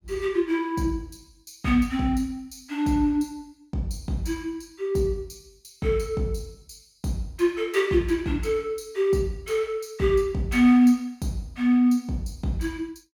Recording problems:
none

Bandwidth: 17.5 kHz